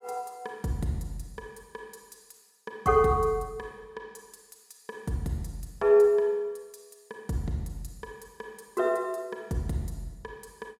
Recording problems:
none

